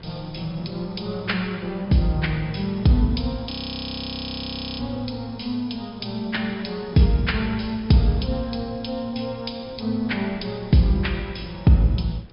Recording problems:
treble cut off; nothing above 5.5 kHz
wind noise; below 320 Hz, SNR 22 dB
frozen audio; at 3.5 s for 1.5 s

